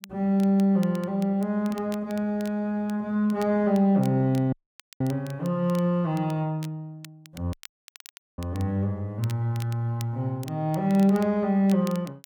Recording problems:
crackling; vinyl, SNR 23 dB
dropout; at 4.5 s and at 7.5 s for 1 s

